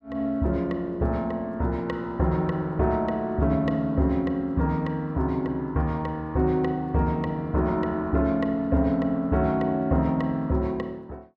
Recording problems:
none

